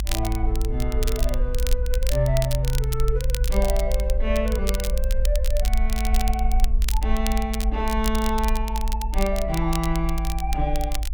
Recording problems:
rumble; below 54 Hz, SNR -2 dB
crackle; vinyl, SNR 8 dB

